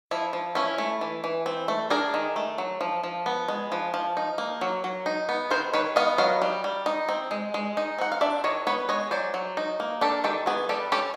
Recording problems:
none

